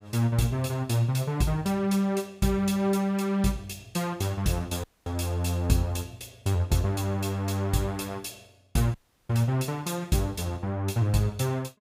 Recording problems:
audio cutting out; at 5 s and at 9 s

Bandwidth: 15.5 kHz